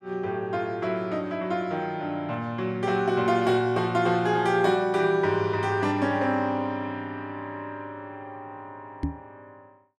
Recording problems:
microphone bump; at 9 s; peak +1 dB vs average level

